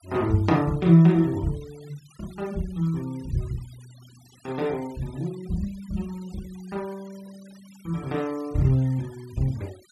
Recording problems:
noise reduction artefacts; signal-to-artefact ratio 25 dB

